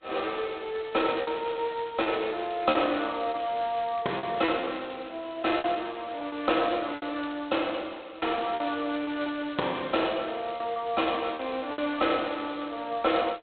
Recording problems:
telephone audio; 300 Hz to 3.9 kHz, G.726
packet loss; 6% of the sound replaced, filled with repeated pitch periods

